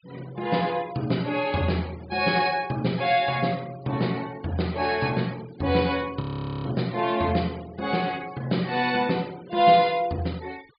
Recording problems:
treble missing; nothing above 5 kHz
denoising artefacts; signal-to-artefact ratio 23 dB
frozen audio; at 6 s

